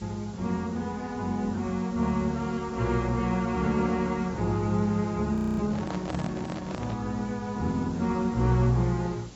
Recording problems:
lossy compression; AAC, log-spectral distance 5 dB, nothing above 17.7 kHz
electrical hum; 50 Hz, harmonics up to 400 Hz, SNR 25 dB
background hiss; SNR 21 dB
frozen audio; at 5.5 s
handling noise; from 5.5 to 7 s; peak -4 dB vs average level

